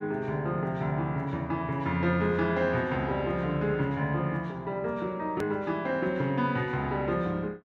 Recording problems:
hard cut with a click; at 5.5 s

